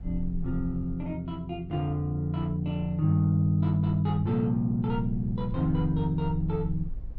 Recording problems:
rumble; below 48 Hz, strongest tone 22 Hz, SNR 15 dB

